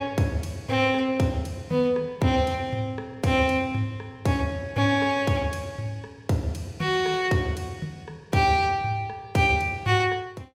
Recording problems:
none

